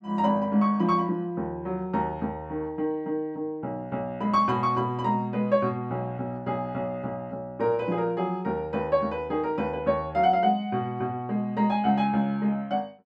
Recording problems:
none

